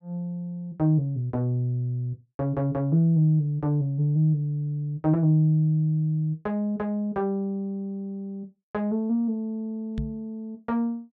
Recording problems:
knock on the microphone; at 10 s; peak -2 dB vs average level

